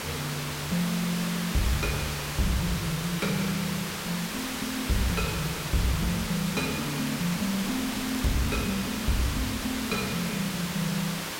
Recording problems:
distorted audio; soft clipping, signal-to-distortion ratio 8 dB
hiss; slope -2 dB per octave, SNR 3 dB
wind on the microphone; below 800 Hz, SNR 22 dB
crackling; at 7.5 s; loose cable, SNR 16 dB

